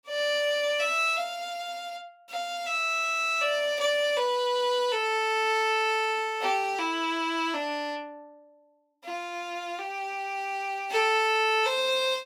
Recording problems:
none

